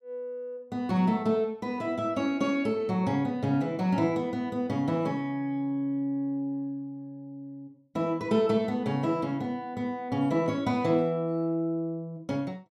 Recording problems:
none

